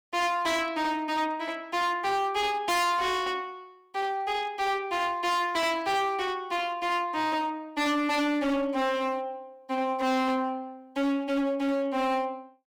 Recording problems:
distortion; hard clipping, uneven, signal-to-distortion ratio 7 dB

